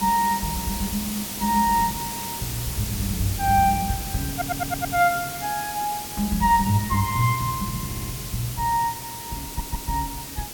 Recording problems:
hiss; SNR 6 dB
stutter; at 4.5 s, at 8 s and at 9.5 s

